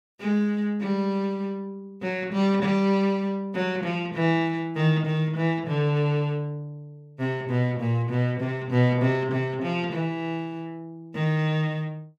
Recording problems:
none

